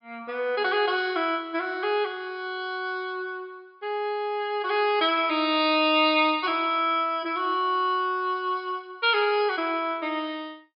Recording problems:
low-pass filter; nothing above 5.5 kHz

